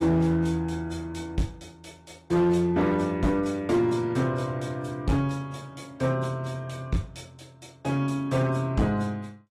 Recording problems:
lossy codec; AAC, log-spectral distance 2 dB
distortion; hard clipping, signal-to-distortion ratio 11 dB

